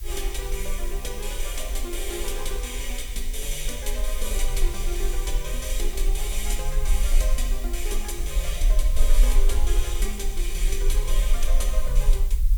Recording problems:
background hiss; slope +2 dB per octave, SNR 12 dB
rumble; below 40 Hz, strongest tone 22 Hz, SNR -4 dB

